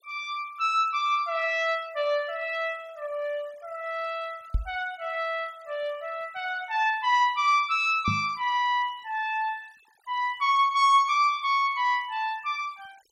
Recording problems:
denoising artefacts; signal-to-artefact ratio 27 dB
microphone bump; at 4.5 s and at 8 s; peak +2 dB vs average level

